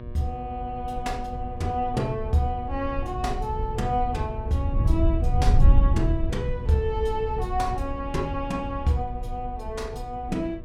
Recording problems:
electrical hum; 60 Hz, harmonics up to 2.3 kHz, SNR 15 dB
wind noise; below 78 Hz, SNR 0 dB

